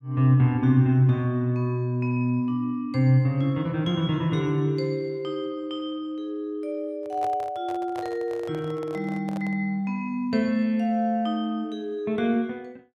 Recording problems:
microphone handling noise; from 7 to 9.5 s; peak -8 dB vs average level

